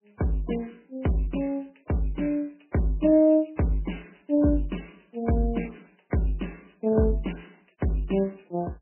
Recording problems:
lossy codec; MP3, log-spectral distance 6 dB, nothing above 3 kHz

